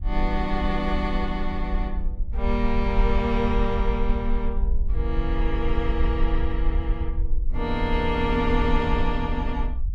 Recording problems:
low-frequency rumble; below 50 Hz, SNR 2 dB

